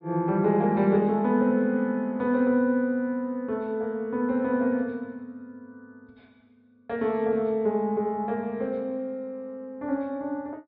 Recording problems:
treble cut off; nothing above 5.5 kHz

